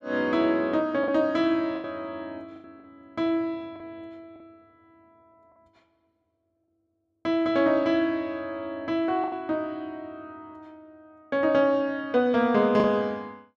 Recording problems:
lost packets; 4% of the sound replaced, filled with the last packet

